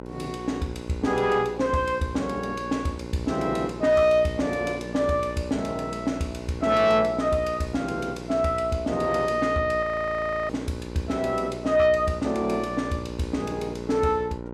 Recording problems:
distorted audio; soft clipping, signal-to-distortion ratio 12 dB
hum; 60 Hz, harmonics up to 1.5 kHz, SNR 11 dB
audio freezing; at 10 s for 0.5 s

